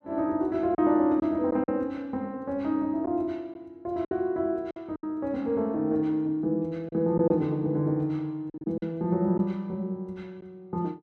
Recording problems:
lost packets; 5% of the sound replaced, filled with silence

